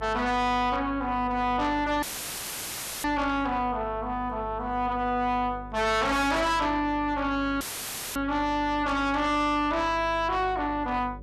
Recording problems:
distortion; soft clipping, signal-to-distortion ratio 6 dB
hum; 50 Hz, harmonics up to 600 Hz, SNR 17 dB
dropout; at 2 s for 1 s and at 7.5 s for 0.5 s; filled with static

